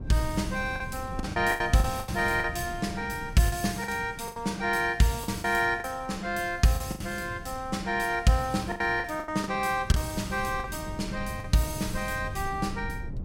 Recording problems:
low-frequency rumble; below 160 Hz, SNR 14 dB
packet loss; 9% of the sound replaced, filled with the last packet

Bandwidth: 16 kHz